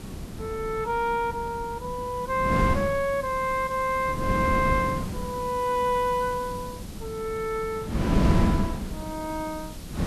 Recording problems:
hiss; slope +3 dB per octave, SNR 19 dB
wind noise; below 260 Hz, SNR 3 dB

